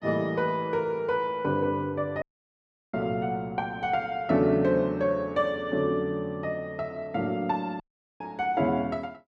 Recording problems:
dropout; at 2 s for 0.5 s and at 8 s

